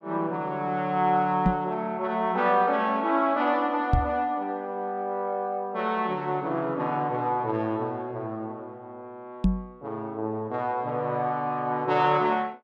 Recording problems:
knock on the microphone; at 1.5 s, at 4 s and at 9.5 s; peak +8 dB vs average level

